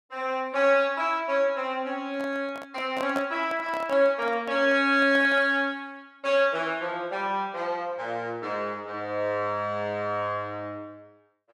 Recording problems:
microphone handling noise; from 2 to 5.5 s; peak -3 dB vs average level

